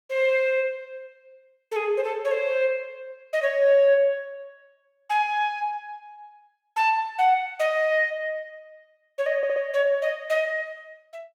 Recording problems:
stutter; at 9.5 s

